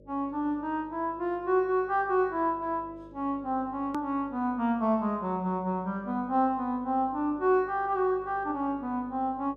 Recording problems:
electrical hum; 50 Hz, harmonics up to 600 Hz, SNR 24 dB
click at an edit; at 4 s

